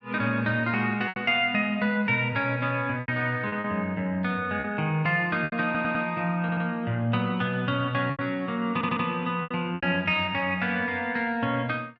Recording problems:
packet loss; 5% of the sound replaced, filled with repeated pitch periods
audio stuttering; at 5.5 s, at 6.5 s and at 8.5 s

